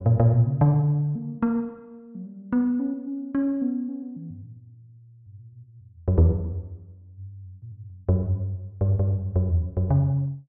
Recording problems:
none

